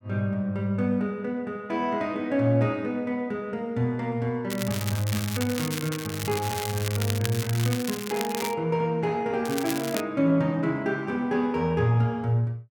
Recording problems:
crackle; from 4.5 to 8.5 s and at 9.5 s; loose cable, SNR 7 dB

